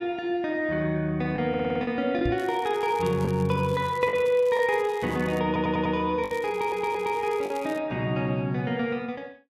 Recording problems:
lost packets; 3% of the sound replaced, filled with the last packet
stutter; at 1.5 s, at 5.5 s and at 6.5 s
microphone bump; at 2.5 s; peak 0 dB vs average level
crackling; from 2.5 to 4 s, from 4.5 to 5.5 s and from 6 to 8 s; loose cable, SNR 23 dB

